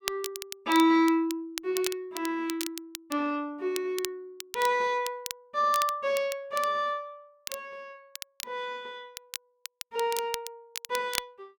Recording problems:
crackling; vinyl, SNR 10 dB

